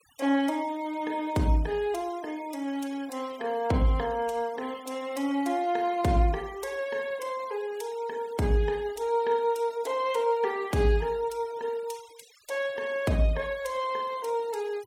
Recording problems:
noise reduction artefacts; signal-to-artefact ratio 23 dB

